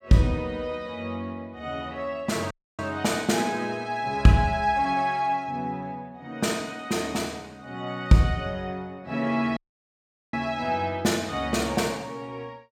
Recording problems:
audio cutting out; at 2.5 s and at 9.5 s for 1 s

